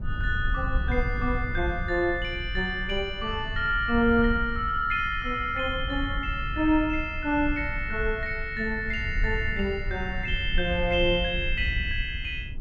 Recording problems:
rumble; below 72 Hz, SNR 7 dB

